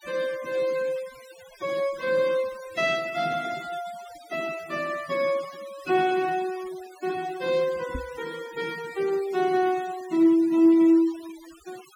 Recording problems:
denoising artefacts; signal-to-artefact ratio 20 dB
microphone bump; at 8 s; peak -5 dB vs average level

